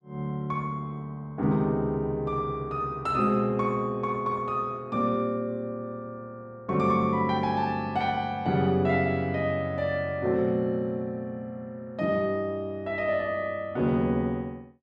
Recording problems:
none

